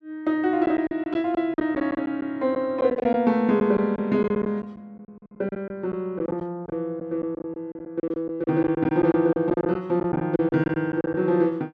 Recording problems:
lost packets; 12% of the sound replaced, filled with silence

